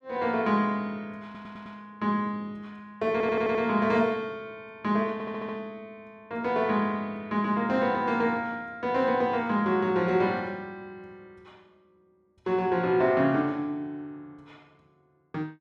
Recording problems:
audio stuttering; at 1 s, at 3 s and at 5 s

